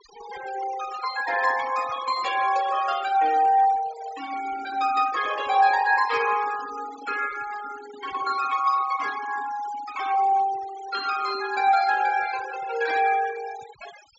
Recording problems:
treble missing; nothing above 8 kHz
denoising artefacts; signal-to-artefact ratio 15 dB

